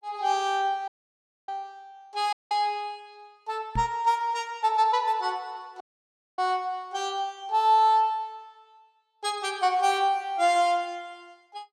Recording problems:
audio cutting out; at 1 s for 0.5 s, at 2.5 s and at 6 s for 0.5 s
knock on the microphone; at 4 s; peak -2 dB vs average level

